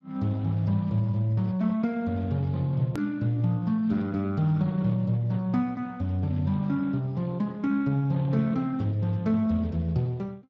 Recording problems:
lossy codec; Speex, log-spectral distance 2 dB, nothing above 13.1 kHz
edit click; at 3 s

